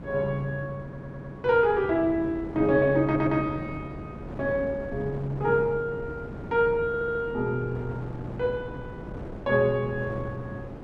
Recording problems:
wind noise; below 420 Hz, SNR 12 dB
stutter; at 1 s, at 3 s and at 7 s

